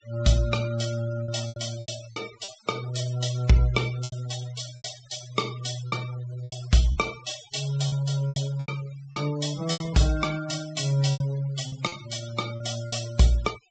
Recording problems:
treble missing; nothing above 8 kHz
noise reduction artefacts; signal-to-artefact ratio 16 dB
lost packets; 9% of the sound replaced, filled with repeated pitch periods

